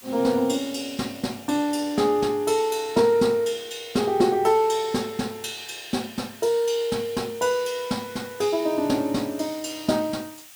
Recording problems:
hiss; SNR 21 dB

